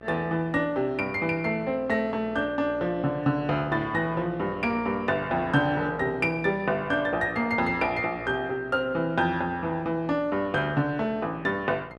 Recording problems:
hum; 60 Hz, harmonics up to 2.7 kHz, SNR 17 dB

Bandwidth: 12.5 kHz